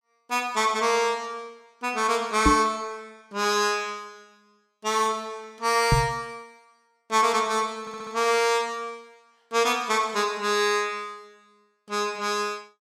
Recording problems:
microphone bump; at 2.5 s and at 6 s; peak +6 dB vs average level
audio stuttering; at 8 s

